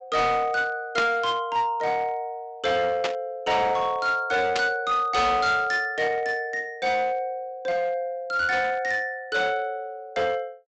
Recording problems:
low-pass filter; nothing above 8 kHz
distortion; hard clipping, uneven, signal-to-distortion ratio 11 dB
static burst; at 1 s, at 3 s and at 4.5 s; peak +2 dB vs average level

